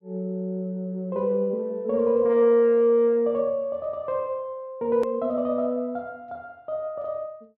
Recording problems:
edit click; at 5 s

